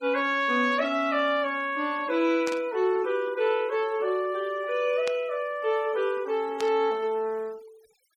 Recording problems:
denoising artefacts; signal-to-artefact ratio 26 dB
static burst; at 2.5 s, at 5 s and at 6.5 s; peak -5 dB vs average level

